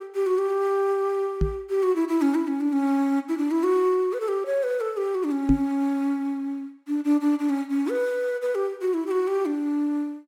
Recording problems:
microphone bump; at 1.5 s and at 5.5 s; peak +6 dB vs average level

